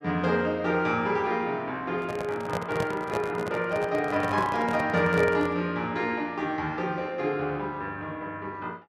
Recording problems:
handling noise; from 2 to 5.5 s; peak 0 dB vs average level

